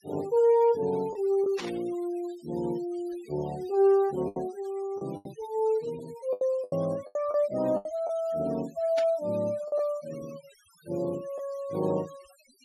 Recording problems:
noise reduction artefacts; signal-to-artefact ratio 23 dB
packet loss; 6% of the sound replaced, filled with the last packet
static burst; at 1.5 s and at 9 s; peak -5 dB vs average level

